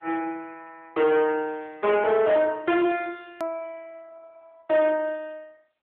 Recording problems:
telephone audio; 300 Hz to 3.4 kHz, AMR-NB
distortion; hard clipping, signal-to-distortion ratio 11 dB
hard cut with a click; at 3.5 s

